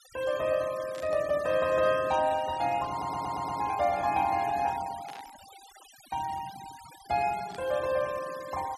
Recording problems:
noise reduction artefacts; signal-to-artefact ratio 17 dB
static burst; at 1 s, at 5 s and at 7.5 s; peak -13 dB vs average level
audio stuttering; at 3 s

